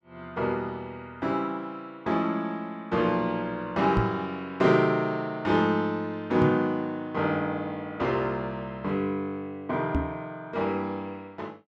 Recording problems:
microphone thump; at 4 s, at 6.5 s and at 10 s; peak +4 dB vs average level

